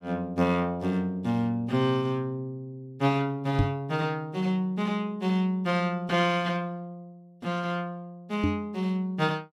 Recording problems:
microphone thump; at 3.5 s and at 8.5 s; peak +6 dB vs average level

